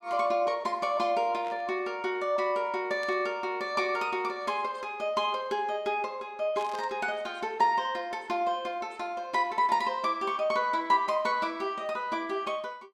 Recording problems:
static burst; at 1.5 s, at 3 s and at 6.5 s; peak -12 dB vs average level

